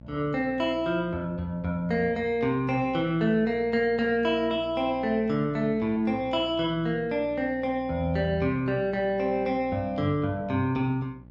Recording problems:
mains hum; 60 Hz, harmonics up to 840 Hz, SNR 20 dB

